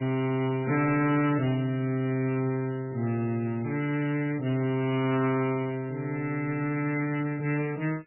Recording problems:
lossy compression; MP3, log-spectral distance 4 dB, nothing above 2.4 kHz
distortion; soft clipping, signal-to-distortion ratio 11 dB

